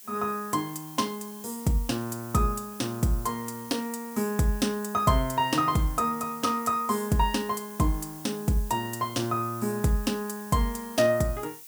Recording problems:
background hiss; slope +3 dB per octave, SNR 15 dB

